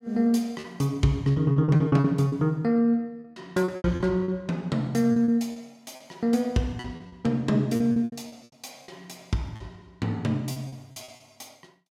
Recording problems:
packet loss; 13% of the sound replaced, filled with repeated pitch periods

